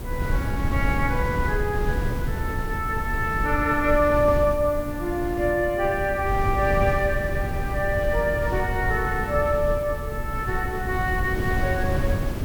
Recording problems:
hum; 60 Hz, harmonics up to 1.2 kHz, SNR 21 dB
background hiss; SNR 21 dB
wind noise; below 150 Hz, SNR 4 dB

